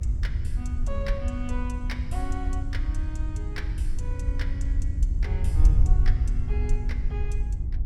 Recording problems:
hum; 50 Hz, harmonics up to 350 Hz, SNR 4 dB
wind noise; below 68 Hz, SNR -10 dB

